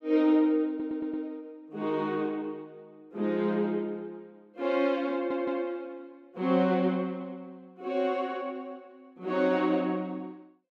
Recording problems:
audio stuttering; at 0.5 s and at 5 s

